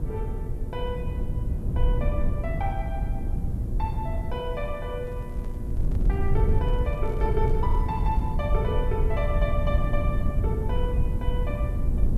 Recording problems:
electrical hum; 60 Hz, harmonics up to 960 Hz, SNR 12 dB
background hiss; SNR 27 dB
rumble; below 88 Hz, SNR -5 dB
microphone handling noise; from 5 to 8.5 s; peak -9 dB vs average level

